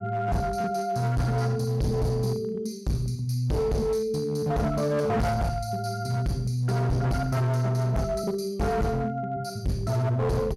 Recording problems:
distorted audio; hard clipping, uneven, signal-to-distortion ratio 8 dB

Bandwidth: 16 kHz